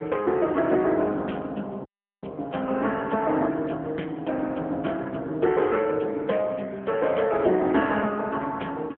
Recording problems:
phone line; 190 Hz to 3.3 kHz, AMR-NB
audio cutting out; at 2 s

